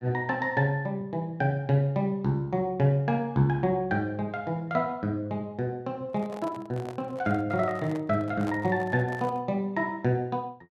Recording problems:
handling noise; from 6 to 9.5 s; peak -6 dB vs average level

